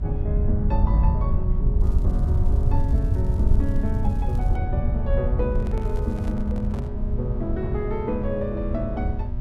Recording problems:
electrical hum; 60 Hz, harmonics up to 1.3 kHz, SNR 9 dB
rumble; below 84 Hz, SNR -5 dB
crackle; from 2 to 4.5 s and at 6 s; loose cable, SNR 27 dB
microphone handling noise; from 5.5 to 7 s; peak -7 dB vs average level

